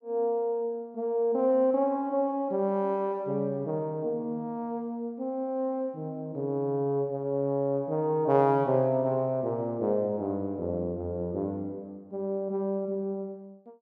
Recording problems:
none

